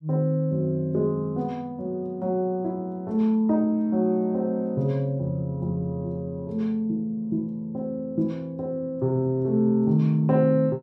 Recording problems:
none

